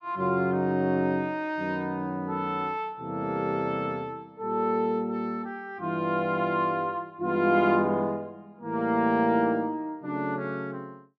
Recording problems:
none

